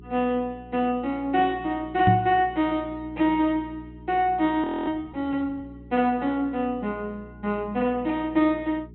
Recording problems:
treble cut off; nothing above 3.8 kHz
hum; 60 Hz, harmonics up to 420 Hz, SNR 20 dB
knock on the microphone; at 2 s; peak +7 dB vs average level
frozen audio; at 4.5 s

